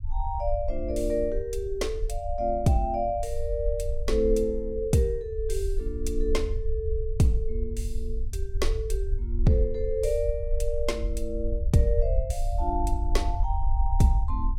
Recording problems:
low-frequency rumble; below 56 Hz, SNR 3 dB

